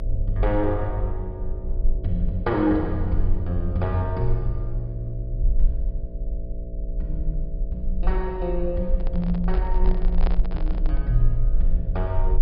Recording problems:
low-pass filter; nothing above 5.5 kHz
hum; 60 Hz, harmonics up to 660 Hz, SNR 11 dB
rumble; below 44 Hz, strongest tone 24 Hz, SNR 1 dB
microphone handling noise; from 9 to 11 s; peak -1 dB vs average level

